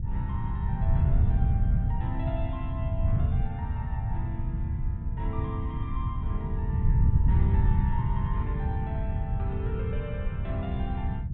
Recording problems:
low-pass filter; nothing above 4 kHz
wind noise; below 120 Hz, SNR -10 dB

